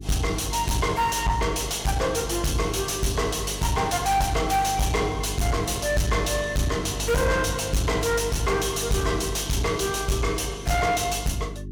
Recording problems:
distorted audio; soft clipping, signal-to-distortion ratio 6 dB
hum; 50 Hz, harmonics up to 400 Hz, SNR 12 dB

